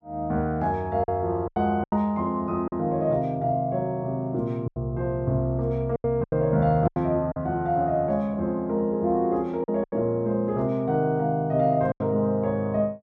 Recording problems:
packet loss; 6% of the sound replaced, filled with silence

